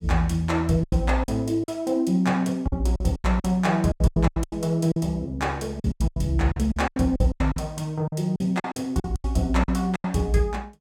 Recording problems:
lost packets; 15% of the sound replaced, filled with silence

